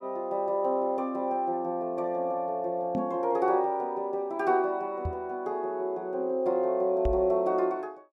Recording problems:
knock on the microphone; at 3 s, at 5 s and at 7 s; peak 0 dB vs average level

